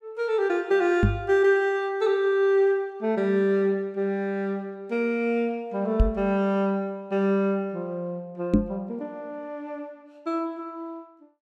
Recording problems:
microphone bump; at 1 s, at 6 s and at 8.5 s; peak +9 dB vs average level

